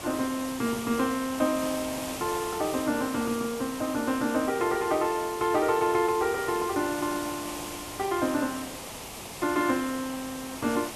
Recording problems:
hiss; SNR 9 dB

